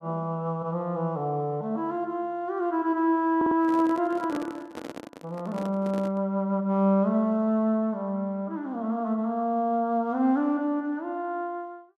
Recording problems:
audio stuttering; at 3.5 s
microphone handling noise; from 3.5 to 6 s; peak -4 dB vs average level

